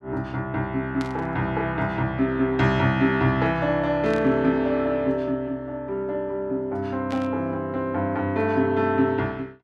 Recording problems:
static burst; at 1 s, at 4 s and at 7 s; peak -10 dB vs average level

